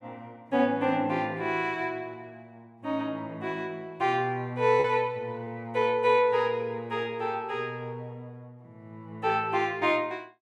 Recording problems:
packet loss; 0.6% of the sound replaced, filled with repeated pitch periods

